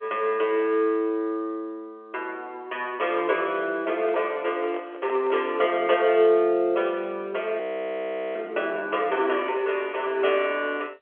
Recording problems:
telephone audio; 300 Hz to 3.4 kHz, G.711
microphone handling noise; from 4 to 5.5 s; peak -9 dB vs average level
audio freezing; at 7.5 s for 1 s

